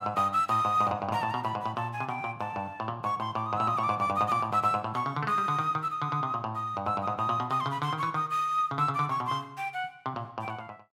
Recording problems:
none

